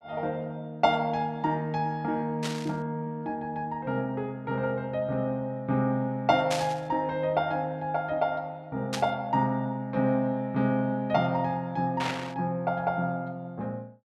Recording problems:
static burst; 4 times, first at 2.5 s; peak +1 dB vs average level

